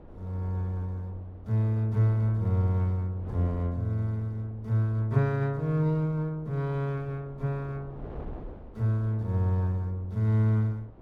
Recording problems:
wind noise; below 390 Hz, SNR 19 dB

